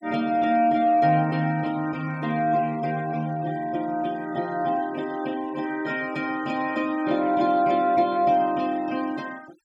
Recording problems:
denoising artefacts; signal-to-artefact ratio 23 dB

